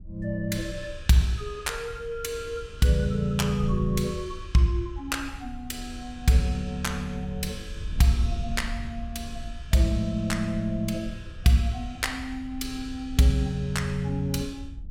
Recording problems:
wind noise; below 76 Hz, SNR 13 dB

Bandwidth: 17 kHz